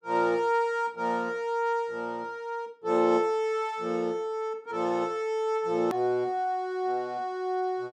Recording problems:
click at an edit; at 6 s

